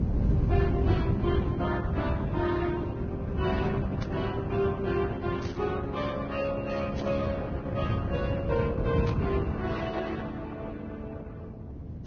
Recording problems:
lossy compression; Opus, then Vorbis, log-spectral distance 3 dB, nothing above 6.3 kHz
rumble; below 180 Hz, SNR -1 dB
static burst; 4 times, first at 4 s; peak -7 dB vs average level

